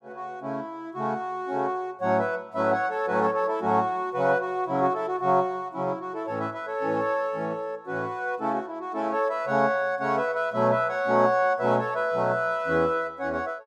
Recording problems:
none

